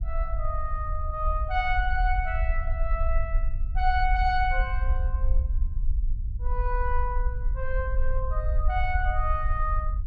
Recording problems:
rumble; below 54 Hz, SNR -1 dB

